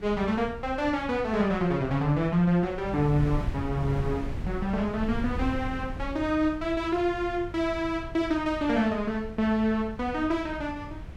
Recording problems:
wind on the microphone; below 130 Hz, SNR 11 dB

